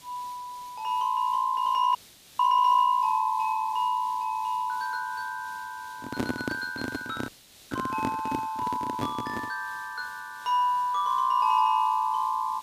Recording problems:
hiss; SNR 23 dB
frozen audio; at 2 s and at 7.5 s
handling noise; from 6 to 9.5 s; peak +2 dB vs average level

